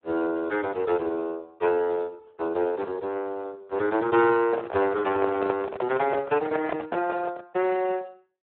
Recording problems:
telephone audio; 320 Hz to 2.9 kHz, Speex
handling noise; from 4.5 to 7.5 s; peak +1 dB vs average level

